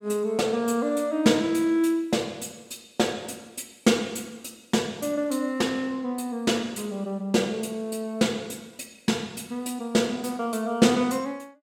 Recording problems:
none

